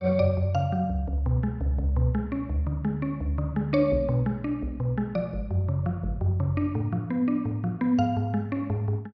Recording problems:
treble missing; nothing above 8 kHz

